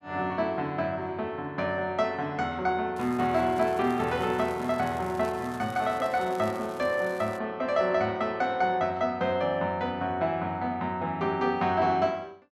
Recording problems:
crackling; from 3 to 7.5 s; loose cable, SNR 22 dB

